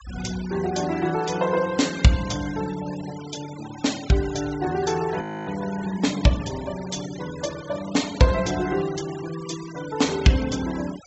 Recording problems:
low-pass filter; nothing above 7.8 kHz
noise reduction artefacts; signal-to-artefact ratio 15 dB
frozen audio; at 5 s

